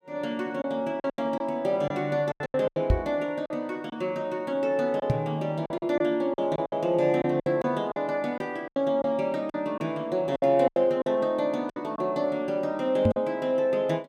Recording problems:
packet loss; 10% of the sound replaced, filled with silence
microphone thump; at 3 s, at 5 s and at 13 s; peak +7 dB vs average level

